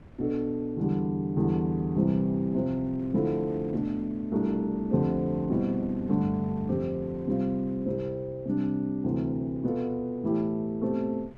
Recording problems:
wind noise; below 300 Hz, SNR 21 dB

